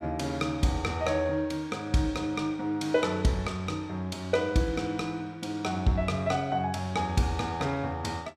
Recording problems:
none

